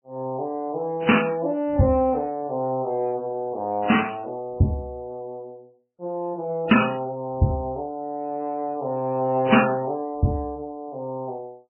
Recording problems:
lossy codec; MP3, then AAC, log-spectral distance 2 dB, nothing above 2.9 kHz

